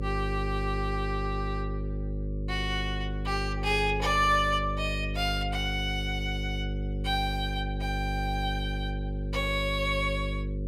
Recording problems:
electrical hum; 50 Hz, harmonics up to 550 Hz, SNR 3 dB

